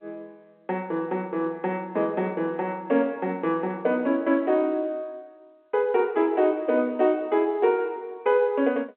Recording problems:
telephone audio; 220 Hz to 3.4 kHz, G.711

